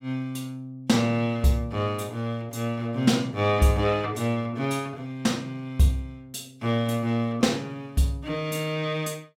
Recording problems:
none

